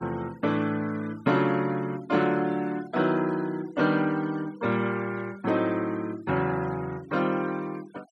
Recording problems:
noise reduction artefacts; signal-to-artefact ratio 21 dB

